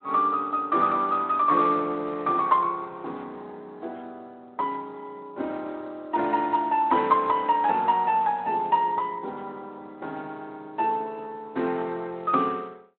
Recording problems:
telephone audio; 240 Hz to 3.6 kHz, Speex

